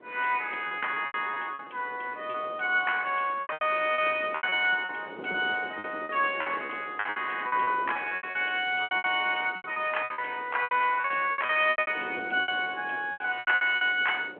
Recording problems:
phone line; 370 Hz to 3.3 kHz, G.726
wind noise; below 630 Hz, SNR 19 dB
packet loss; 18% of the sound replaced, filled with repeated pitch periods

